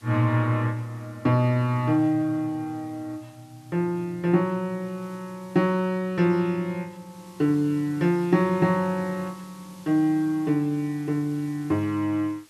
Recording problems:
hiss; slope 0 dB per octave, SNR 28 dB

